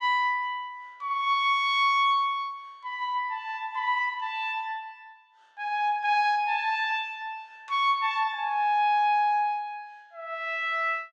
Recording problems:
none

